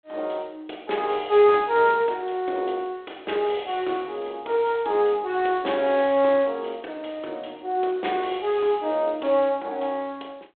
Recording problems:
telephone audio; 240 Hz to 3.7 kHz, G.726

